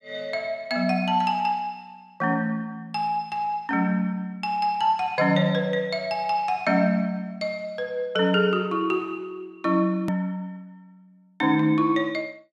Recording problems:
click at an edit; at 10 s

